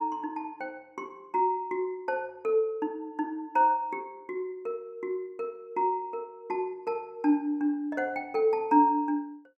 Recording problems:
none

